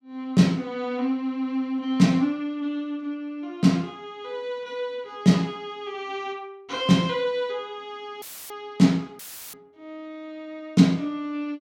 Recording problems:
dropout; at 8 s and at 9 s; filled with static

